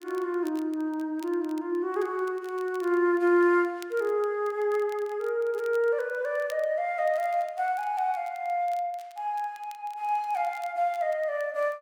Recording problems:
crackle; vinyl, SNR 27 dB

